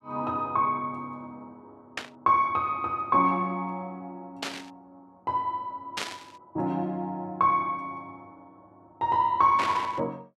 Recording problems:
burst of static; 4 times, first at 2 s; peak 0 dB vs average level

